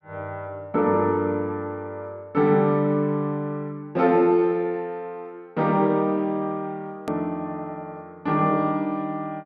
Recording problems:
hard cut with a click; at 7 s

